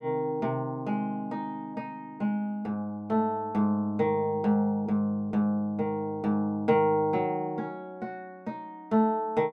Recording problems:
none

